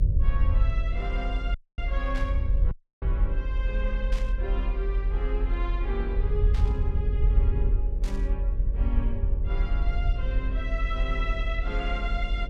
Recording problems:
hum; 50 Hz, harmonics up to 600 Hz, SNR 9 dB
rumble; below 58 Hz, strongest tone 44 Hz, SNR -8 dB
dropout; at 1.5 s and at 2.5 s
static burst; 4 times, first at 2 s; peak -3 dB vs average level

